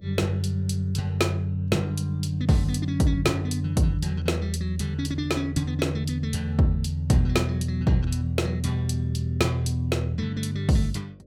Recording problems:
hum; 50 Hz, harmonics up to 600 Hz, SNR 29 dB

